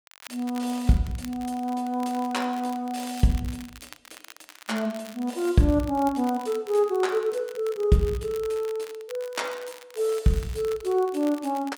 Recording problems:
crackle; vinyl, SNR 20 dB

